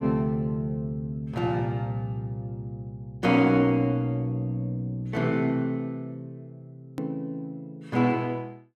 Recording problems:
click at an edit; at 7 s

